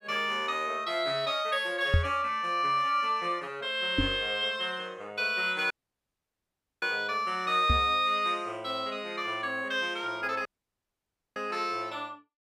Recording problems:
knock on the microphone; at 2 s, at 4 s and at 7.5 s; peak +7 dB vs average level
dropout; at 5.5 s for 1 s and at 10 s for 1 s

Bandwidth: 15.5 kHz